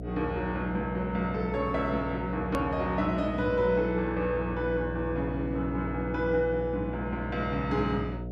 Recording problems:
hum; 60 Hz, harmonics up to 720 Hz, SNR 7 dB
click at an edit; at 2.5 s

